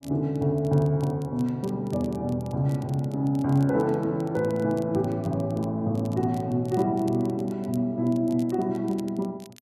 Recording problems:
crackle; vinyl, SNR 27 dB

